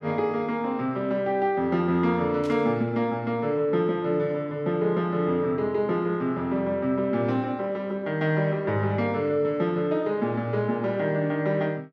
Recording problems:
static burst; at 2.5 s; peak -15 dB vs average level

